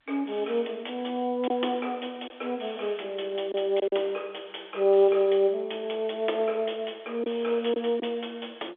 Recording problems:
phone line; 300 Hz to 3.7 kHz, G.711
lost packets; 2% of the sound replaced, filled with silence

